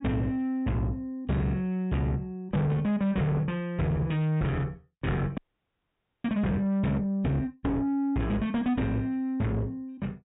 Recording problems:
treble missing; nothing above 4 kHz
distorted audio; soft clipping, signal-to-distortion ratio 8 dB
frozen audio; at 5.5 s for 1 s

